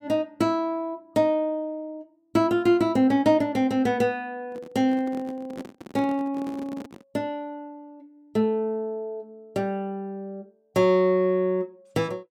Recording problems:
microphone handling noise; from 4.5 to 7 s; peak -9 dB vs average level

